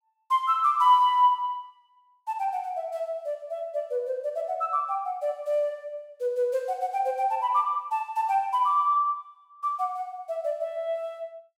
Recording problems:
none

